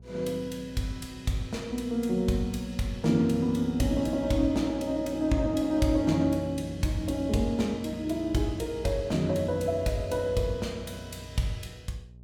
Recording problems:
hum; 60 Hz, harmonics up to 420 Hz, SNR 19 dB

